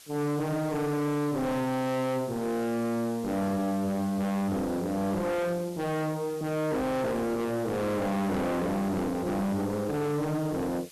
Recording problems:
distortion; hard clipping, uneven, signal-to-distortion ratio 5 dB
hiss; slope +2 dB per octave, SNR 20 dB

